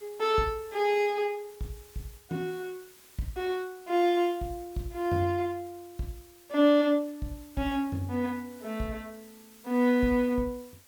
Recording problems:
hiss; slope -1 dB per octave, SNR 25 dB

